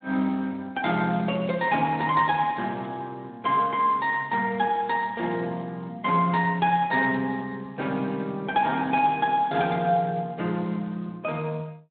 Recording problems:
telephone audio; 130 Hz to 3.7 kHz, Speex

